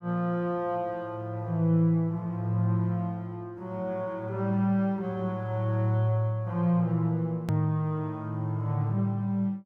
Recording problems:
hard cut with a click; at 7.5 s

